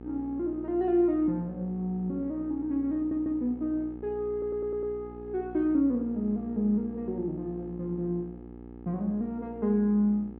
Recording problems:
mains hum; 60 Hz, harmonics up to 900 Hz, SNR 14 dB
stutter; at 3 s and at 4.5 s

